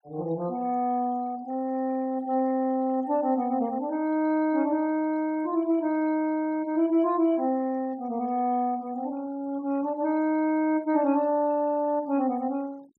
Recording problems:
noise reduction artefacts; signal-to-artefact ratio 27 dB

